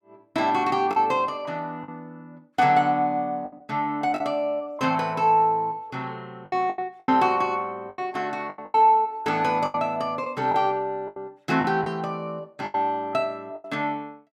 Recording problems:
lost packets; 8% of the sound replaced, filled with the last packet

